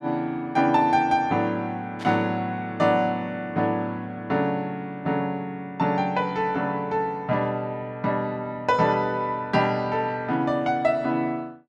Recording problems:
burst of static; at 2 s; peak -10 dB vs average level

